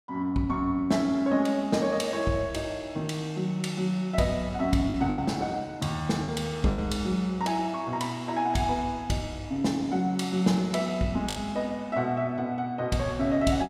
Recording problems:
packet loss; 2% of the sound replaced, filled with the last packet

